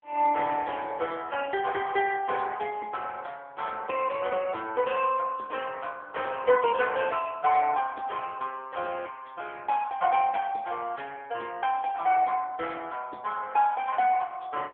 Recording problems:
phone line; 320 Hz to 3.4 kHz, AMR-NB

